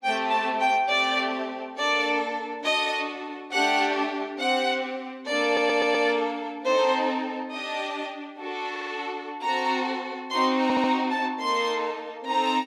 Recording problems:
audio stuttering; at 5.5 s, at 8.5 s and at 11 s

